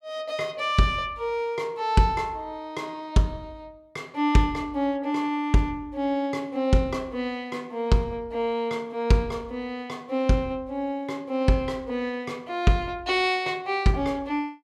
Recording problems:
none

